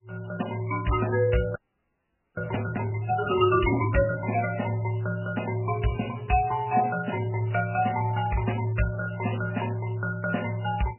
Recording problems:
lossy codec; MP3, log-spectral distance 6 dB, nothing above 2.9 kHz
frozen audio; at 1.5 s for 1 s

